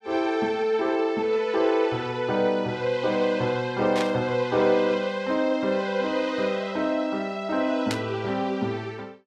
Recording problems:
static burst; at 4 s and at 8 s; peak -1 dB vs average level

